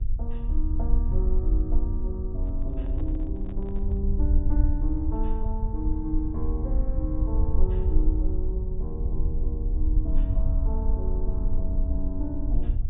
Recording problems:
treble missing; nothing above 4 kHz
hum; 50 Hz, harmonics up to 500 Hz, SNR 22 dB
rumble; below 58 Hz, SNR -7 dB
microphone handling noise; from 2.5 to 4 s; peak -11 dB vs average level

